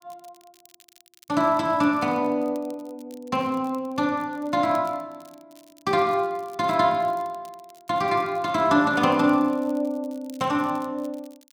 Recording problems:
crackling; vinyl, SNR 30 dB

